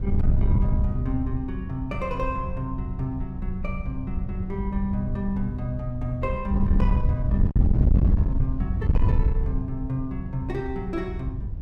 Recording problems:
distortion; soft clipping, signal-to-distortion ratio 10 dB
wind on the microphone; below 96 Hz, SNR -3 dB

